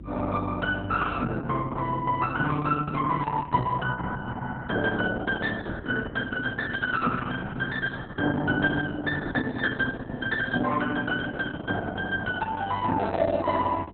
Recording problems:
codec artefacts; Opus, log-spectral distance 4 dB, nothing above 3.6 kHz
electrical hum; 50 Hz, harmonics up to 400 Hz, SNR 19 dB

